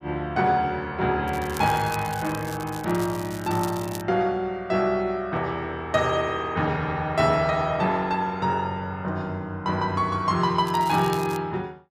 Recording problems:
crackling; from 1.5 to 4 s and at 11 s; loose cable, SNR 16 dB

